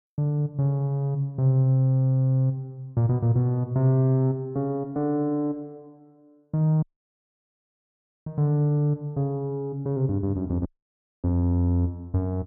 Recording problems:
audio cutting out; at 7 s for 1.5 s and at 11 s for 0.5 s

